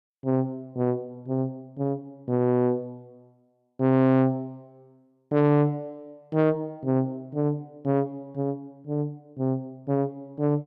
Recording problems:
distorted audio; soft clipping, signal-to-distortion ratio 12 dB

